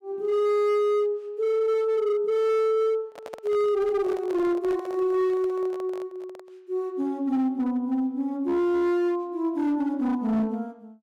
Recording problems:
distortion; hard clipping, signal-to-distortion ratio 11 dB
microphone handling noise; from 3 to 6.5 s; peak -9 dB vs average level

